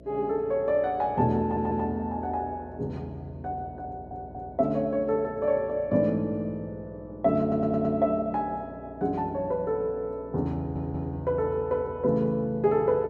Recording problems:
electrical hum; 60 Hz, harmonics up to 660 Hz, SNR 20 dB
stutter; 4 times, first at 1.5 s

